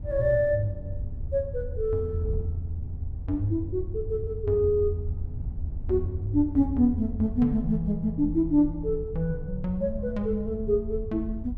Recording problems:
wind on the microphone; below 84 Hz, SNR 10 dB

